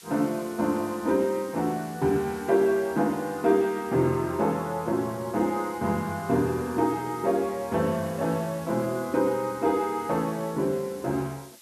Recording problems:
hiss; slope +3 dB per octave, SNR 21 dB

